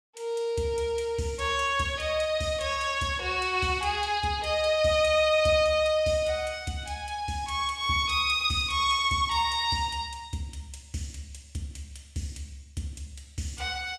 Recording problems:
none

